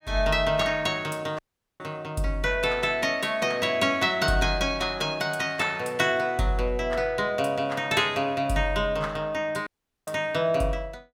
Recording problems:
dropout; at 1.5 s and at 9.5 s

